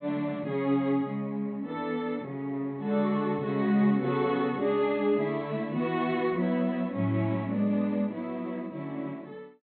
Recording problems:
treble cut off; nothing above 4.3 kHz

